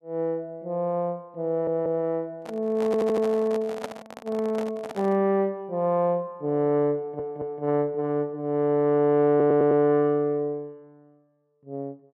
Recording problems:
audio stuttering; 4 times, first at 1.5 s
handling noise; from 2.5 to 5 s; peak -5 dB vs average level

